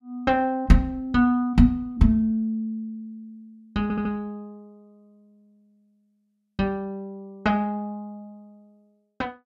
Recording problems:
stutter; at 4 s

